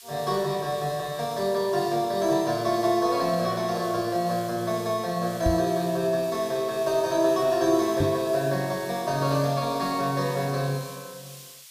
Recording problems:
background hiss; slope +6 dB per octave, SNR 18 dB
microphone bump; at 5.5 s and at 8 s; peak +3 dB vs average level

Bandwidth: 15 kHz